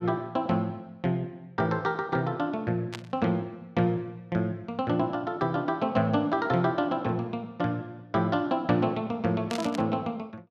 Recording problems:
static burst; at 3 s and at 9.5 s; peak -4 dB vs average level

